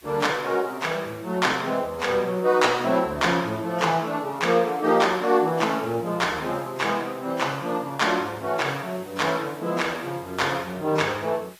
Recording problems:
lossy codec; AAC, log-spectral distance 4 dB, nothing above 14.7 kHz
background hiss; SNR 24 dB

